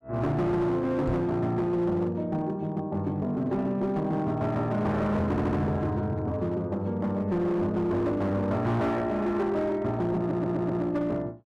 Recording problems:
distorted audio; hard clipping, signal-to-distortion ratio 11 dB
microphone thump; at 1 s; peak +1 dB vs average level
audio stuttering; at 5.5 s and at 10 s

